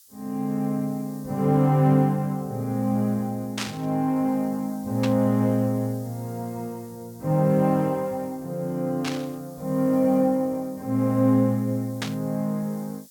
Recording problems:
hiss; SNR 25 dB
burst of static; 4 times, first at 3.5 s; peak -1 dB vs average level

